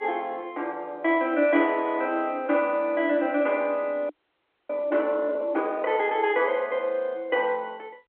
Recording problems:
telephone audio; 260 Hz to 3.3 kHz, G.711
audio freezing; at 4 s for 0.5 s

